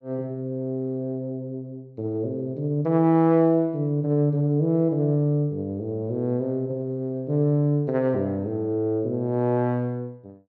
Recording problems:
none

